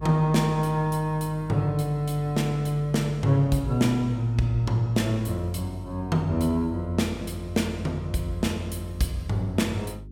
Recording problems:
electrical hum; 50 Hz, harmonics up to 400 Hz, SNR 16 dB

